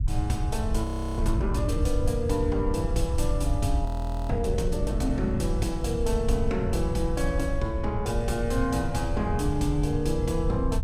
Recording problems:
rumble; below 86 Hz, SNR 2 dB
audio freezing; at 1 s and at 4 s

